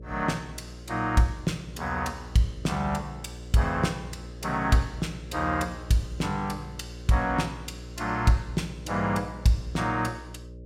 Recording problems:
hum; 60 Hz, harmonics up to 600 Hz, SNR 15 dB

